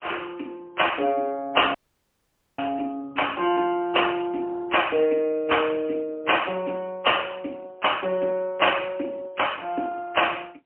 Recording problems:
telephone audio; 240 Hz to 3.1 kHz, AMR-NB, then MP3
dropout; at 2 s for 1 s

